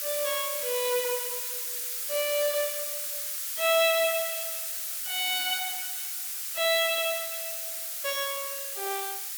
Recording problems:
hiss; SNR 2 dB

